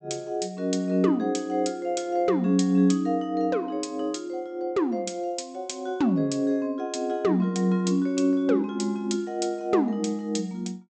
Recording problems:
treble cut off; nothing above 8 kHz

